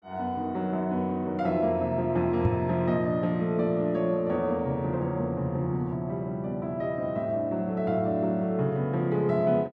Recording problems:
microphone thump; at 2.5 s; peak +5 dB vs average level

